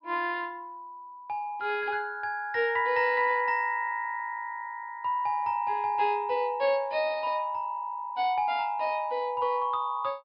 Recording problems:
treble cut off; nothing above 5.5 kHz

